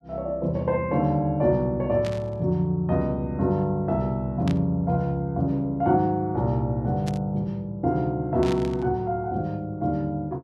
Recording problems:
static burst; 4 times, first at 2 s; peak -7 dB vs average level

